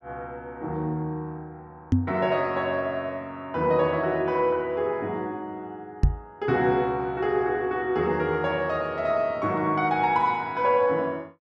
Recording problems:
microphone thump; at 2 s and at 6 s; peak +8 dB vs average level

